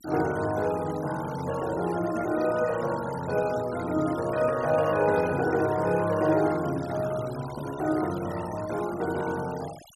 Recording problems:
noise reduction artefacts; signal-to-artefact ratio 17 dB

